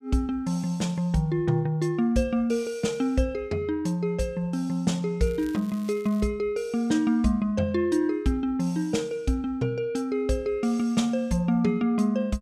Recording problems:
crackle; at 5.5 s; loose cable, SNR 25 dB

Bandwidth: 15 kHz